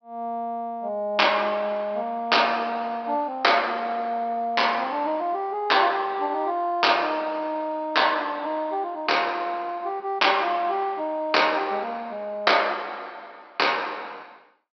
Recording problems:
low-pass filter; nothing above 5.5 kHz

